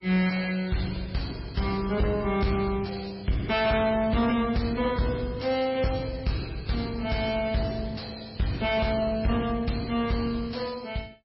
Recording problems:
lossy codec; MP3, log-spectral distance 6 dB, nothing above 5.2 kHz
distortion; soft clipping, signal-to-distortion ratio 7 dB

